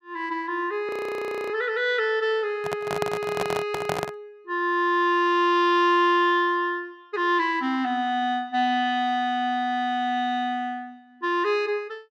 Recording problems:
audio freezing; at 1 s for 0.5 s
handling noise; from 2.5 to 4 s; peak 0 dB vs average level

